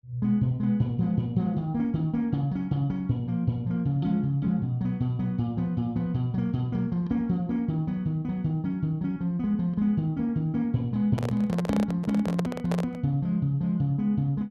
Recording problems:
microphone handling noise; from 11 to 13 s; peak -1 dB vs average level

